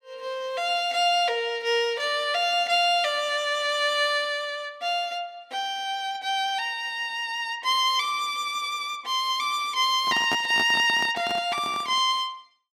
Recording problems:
microphone handling noise; from 10 to 12 s; peak -2 dB vs average level

